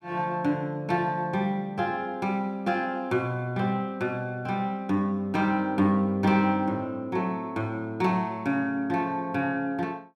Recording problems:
none

